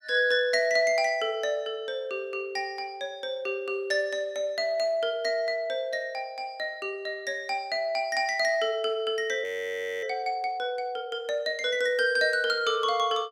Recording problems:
frozen audio; at 9.5 s for 0.5 s

